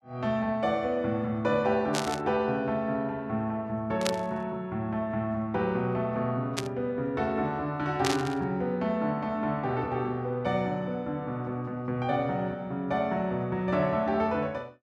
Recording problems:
burst of static; 4 times, first at 2 s; peak +4 dB vs average level

